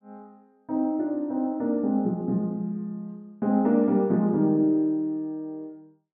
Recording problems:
none

